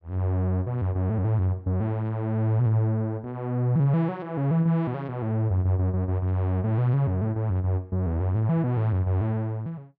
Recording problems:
none

